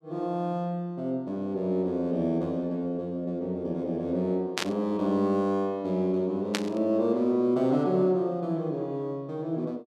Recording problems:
static burst; at 4.5 s and at 6.5 s; peak +3 dB vs average level

